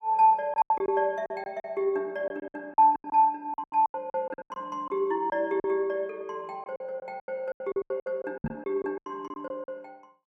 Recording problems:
lost packets; 17% of the sound replaced, filled with silence
knock on the microphone; at 8.5 s; peak +1 dB vs average level

